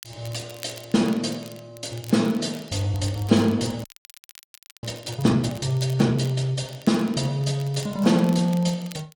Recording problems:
codec artefacts; AAC, log-spectral distance 3 dB
crackling; vinyl, SNR 22 dB
audio freezing; at 4 s for 1 s

